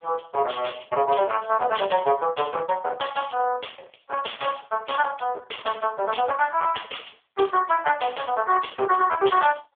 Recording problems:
phone line; 340 Hz to 3.1 kHz, AMR-NB
distortion; hard clipping, uneven, signal-to-distortion ratio 13 dB

